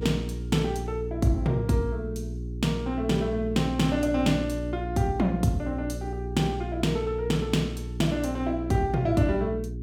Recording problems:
electrical hum; 60 Hz, harmonics up to 420 Hz, SNR 7 dB

